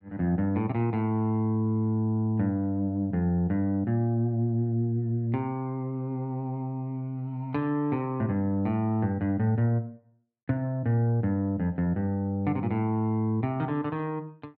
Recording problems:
none

